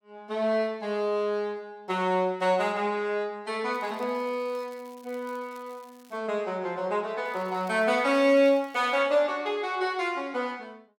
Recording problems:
crackle; from 3.5 to 6 s and from 7.5 to 9 s; loose cable, SNR 30 dB

